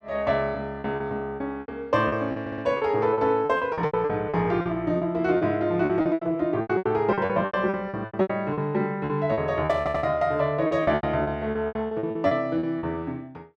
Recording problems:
lost packets; 17% of the sound replaced, filled with repeated pitch periods
stutter; at 2.5 s and at 10 s
static burst; at 9.5 s; peak -18 dB vs average level

